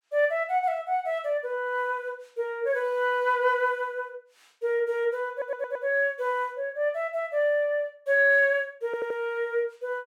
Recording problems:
stutter; at 5.5 s and at 9 s

